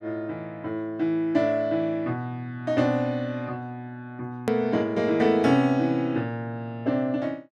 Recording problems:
click at an edit; at 4.5 s

